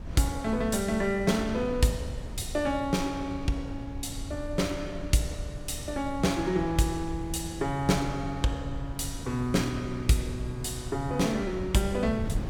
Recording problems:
wind on the microphone; below 120 Hz, SNR 10 dB

